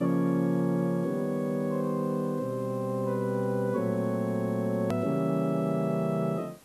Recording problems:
hiss; slope -3 dB per octave, SNR 26 dB
click at an edit; at 5 s

